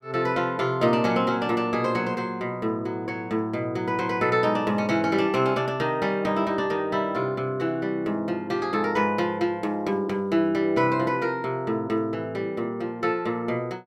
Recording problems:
none

